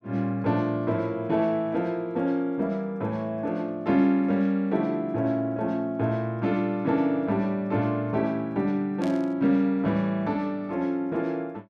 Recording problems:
static burst; at 9 s; peak -12 dB vs average level

